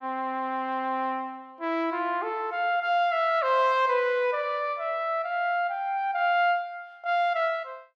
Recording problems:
none

